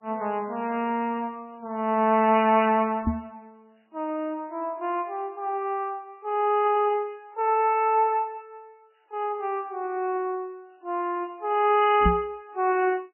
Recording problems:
lossy compression; MP3, log-spectral distance 2 dB, nothing above 2.5 kHz
knock on the microphone; at 3 s and at 12 s; peak +5 dB vs average level

